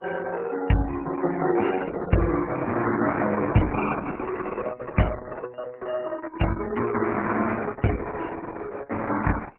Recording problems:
codec artefacts; MP3, then Opus, log-spectral distance 4 dB

